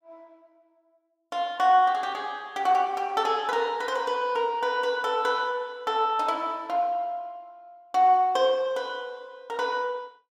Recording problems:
none

